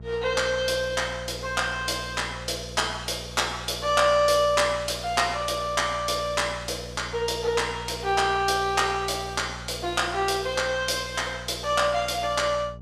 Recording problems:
hum; 60 Hz, harmonics up to 660 Hz, SNR 16 dB

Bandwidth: 14.5 kHz